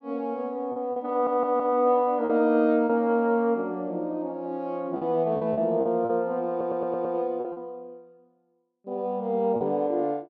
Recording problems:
packet loss; 6% of the sound replaced, filled with repeated pitch periods
stutter; at 1 s and at 6.5 s

